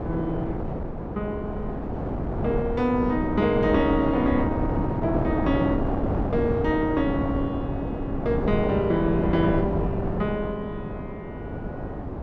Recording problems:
wind noise; below 490 Hz, SNR 3 dB

